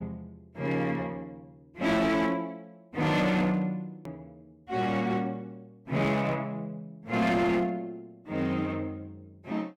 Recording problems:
distorted audio; hard clipping, signal-to-distortion ratio 11 dB
click at an edit; at 4 s

